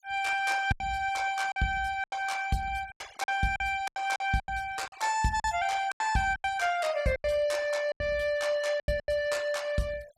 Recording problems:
denoising artefacts; signal-to-artefact ratio 21 dB
packet loss; 11% of the sound replaced, filled with silence

